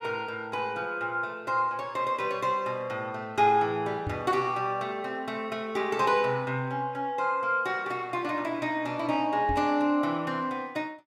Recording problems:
microphone bump; at 4 s and at 9.5 s; peak -2 dB vs average level

